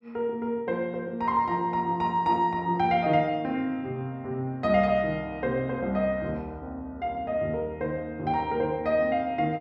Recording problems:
none

